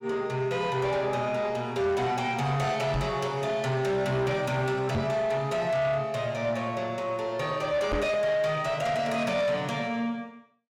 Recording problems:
distortion; soft clipping, signal-to-distortion ratio 10 dB
microphone thump; at 3 s, at 5 s and at 8 s; peak +3 dB vs average level

